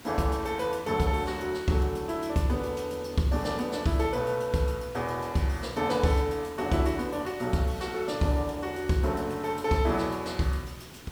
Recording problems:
background hiss; slope -3 dB per octave, SNR 18 dB

